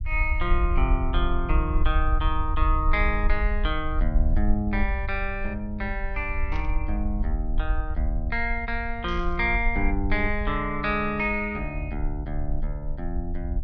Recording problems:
treble cut off; nothing above 6.4 kHz
rumble; below 56 Hz, SNR 1 dB
static burst; at 6.5 s and at 9 s; peak -12 dB vs average level

